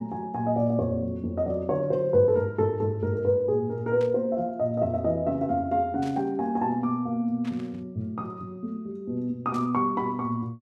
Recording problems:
burst of static; 4 times, first at 4 s; peak -14 dB vs average level

